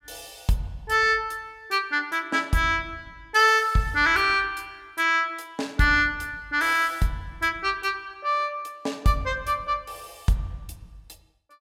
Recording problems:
none

